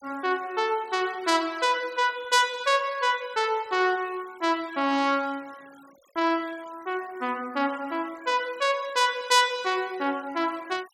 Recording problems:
noise reduction artefacts; signal-to-artefact ratio 24 dB

